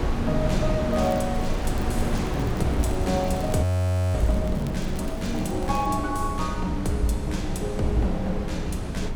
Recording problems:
hum; 60 Hz, harmonics up to 540 Hz, SNR 23 dB
low-frequency rumble; below 76 Hz, strongest tone 22 Hz, SNR 9 dB
wind on the microphone; below 490 Hz, SNR 5 dB
crackle; from 1 to 3.5 s and from 4 to 6 s; loose cable, SNR 21 dB
audio freezing; at 3.5 s for 0.5 s

